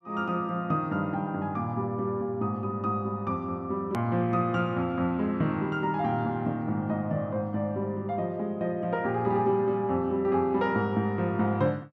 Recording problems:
edit click; at 4 s

